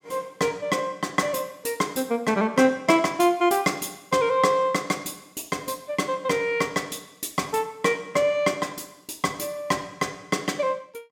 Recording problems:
none

